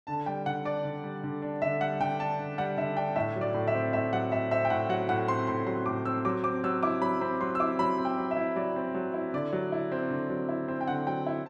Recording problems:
none

